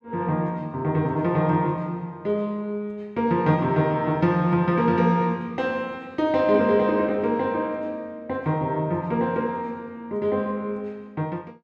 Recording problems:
none

